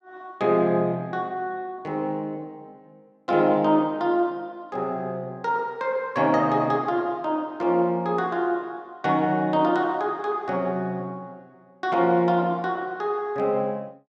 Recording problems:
none

